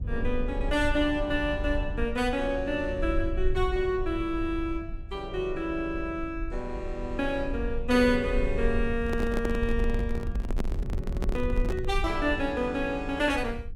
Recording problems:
low-frequency rumble; below 60 Hz, SNR 6 dB
microphone handling noise; from 9 to 12 s; peak +1 dB vs average level

